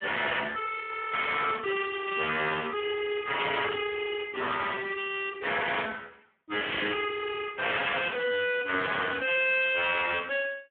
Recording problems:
telephone audio; 170 Hz to 3.5 kHz, Speex
distortion; hard clipping, uneven, signal-to-distortion ratio 10 dB

